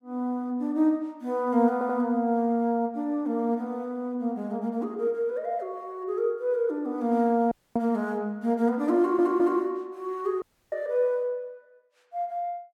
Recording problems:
stutter; at 1.5 s and at 9 s
audio cutting out; at 7.5 s and at 10 s

